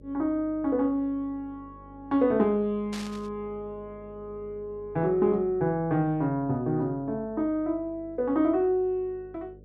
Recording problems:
hum; 50 Hz, harmonics up to 600 Hz, SNR 23 dB
burst of static; at 3 s; peak -8 dB vs average level

